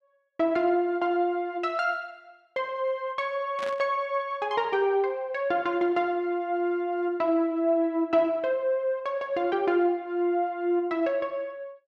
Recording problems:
static burst; at 3.5 s; peak -7 dB vs average level

